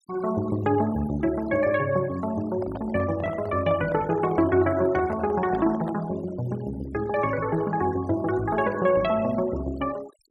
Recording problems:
noise reduction artefacts; signal-to-artefact ratio 20 dB
microphone handling noise; from 2.5 to 6 s; peak -7 dB vs average level

